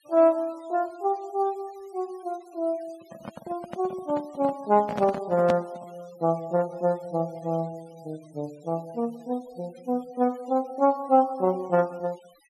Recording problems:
noise reduction artefacts; signal-to-artefact ratio 26 dB
microphone handling noise; from 3 to 6 s; peak +2 dB vs average level

